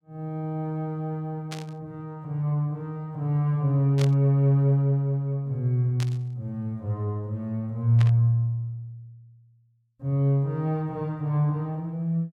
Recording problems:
static burst; 4 times, first at 1.5 s; peak -6 dB vs average level

